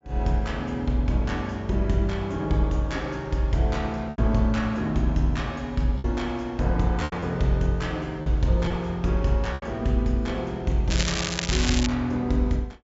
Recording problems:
treble missing; nothing above 8 kHz
packet loss; 3% of the sound replaced, filled with repeated pitch periods
crackling; at 11 s; loose cable, SNR 3 dB

